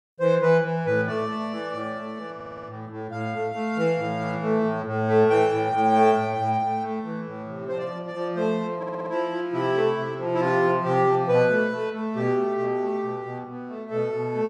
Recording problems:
stutter; at 2.5 s and at 9 s

